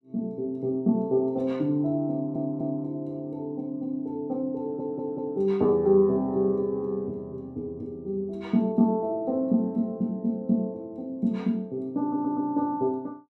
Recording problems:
audio stuttering; at 2 s, at 4.5 s and at 12 s

